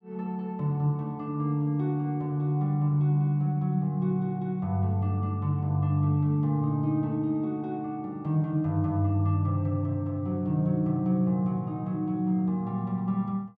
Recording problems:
none

